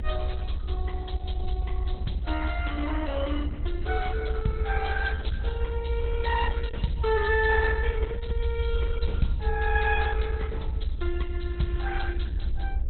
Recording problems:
lossy compression; Opus, log-spectral distance 4 dB, nothing above 4.1 kHz
hum; 60 Hz, harmonics up to 600 Hz, SNR 19 dB
rumble; below 70 Hz, SNR 1 dB

